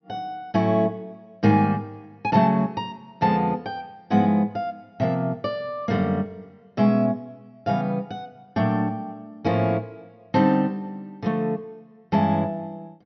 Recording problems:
treble cut off; nothing above 6 kHz

